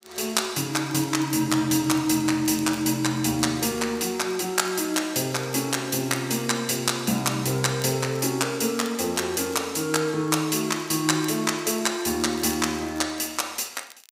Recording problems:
crackle; vinyl, SNR 23 dB

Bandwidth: 15.5 kHz